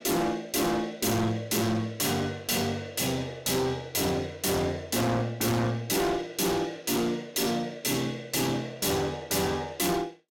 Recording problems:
distortion; hard clipping, uneven, signal-to-distortion ratio 6 dB

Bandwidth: 17 kHz